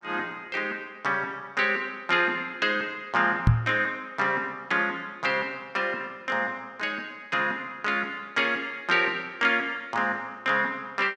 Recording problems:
knock on the microphone; at 3.5 s; peak +9 dB vs average level

